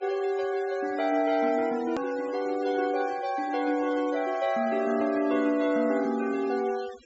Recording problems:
low-pass filter; nothing above 7.6 kHz
noise reduction artefacts; signal-to-artefact ratio 20 dB
edit click; at 2 s

